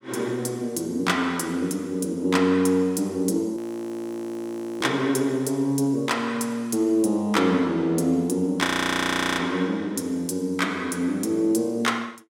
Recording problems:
frozen audio; at 3.5 s for 1 s and at 8.5 s for 0.5 s

